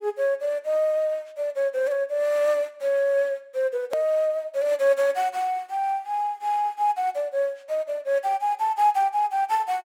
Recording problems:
hard cut with a click; at 4 s

